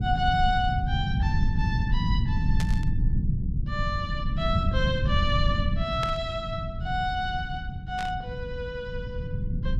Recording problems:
rumble; below 130 Hz, SNR -1 dB
burst of static; at 2.5 s, at 6 s and at 8 s; peak -1 dB vs average level

